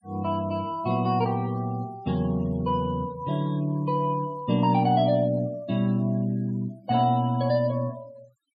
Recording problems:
noise reduction artefacts; signal-to-artefact ratio 25 dB

